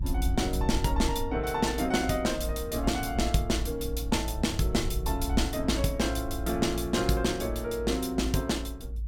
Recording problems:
low-frequency rumble; below 64 Hz, strongest tone 56 Hz, SNR 6 dB

